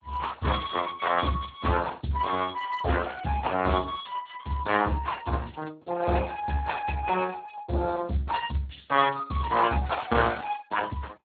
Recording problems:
lossy compression; Opus, then Speex, log-spectral distance 5 dB

